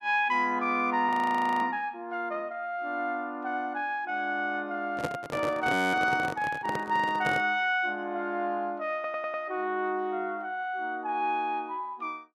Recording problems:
audio freezing; at 1 s for 0.5 s and at 5.5 s
microphone handling noise; from 5 to 7.5 s; peak +1 dB vs average level
stutter; at 9 s

